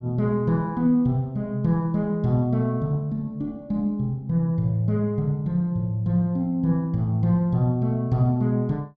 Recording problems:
none

